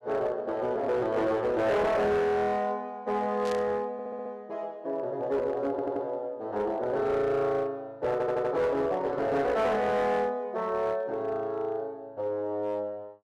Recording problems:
distorted audio; hard clipping, uneven, signal-to-distortion ratio 11 dB
burst of static; at 3.5 s; peak -9 dB vs average level
stutter; at 4 s, at 5.5 s and at 8 s

